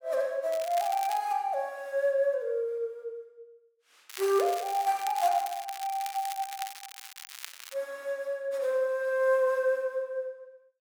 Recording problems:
crackling; at 0.5 s and from 4 to 8 s; loose cable, SNR 13 dB

